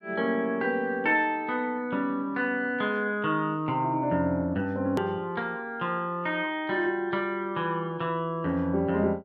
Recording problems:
click at an edit; at 5 s

